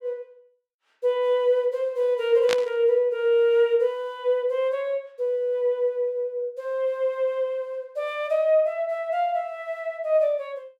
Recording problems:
static burst; at 2.5 s; peak +2 dB vs average level

